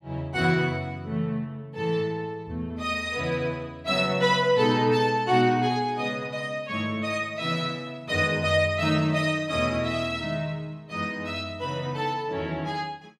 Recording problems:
none

